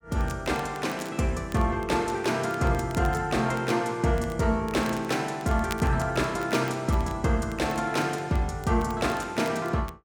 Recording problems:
crackling; vinyl, SNR 21 dB

